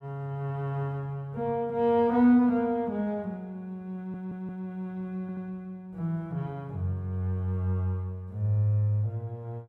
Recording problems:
audio stuttering; at 4 s and at 5 s

